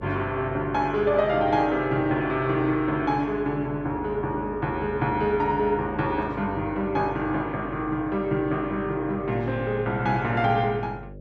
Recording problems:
hum; 50 Hz, harmonics up to 600 Hz, SNR 17 dB

